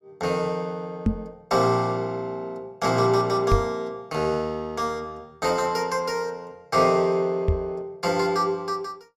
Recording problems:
microphone bump; at 1 s, at 3.5 s and at 7.5 s; peak +6 dB vs average level

